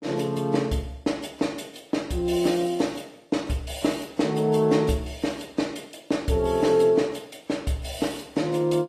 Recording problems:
lossy compression; AAC, log-spectral distance 3 dB, nothing above 13.1 kHz

